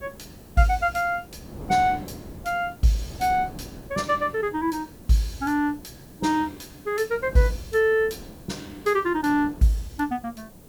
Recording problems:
background hiss; SNR 28 dB
wind on the microphone; below 410 Hz, SNR 19 dB

